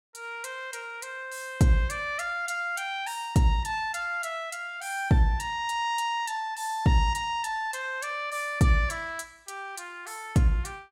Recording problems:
none

